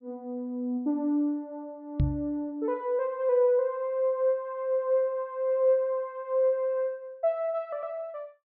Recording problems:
treble cut off; nothing above 5.5 kHz
microphone bump; at 2 s; peak +6 dB vs average level

